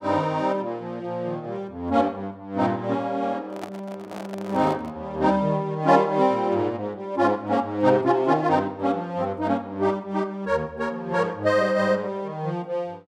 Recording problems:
handling noise; from 3.5 to 5 s; peak -6 dB vs average level

